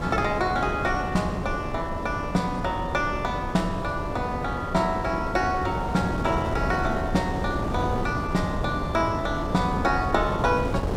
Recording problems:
wind on the microphone; below 510 Hz, SNR 4 dB

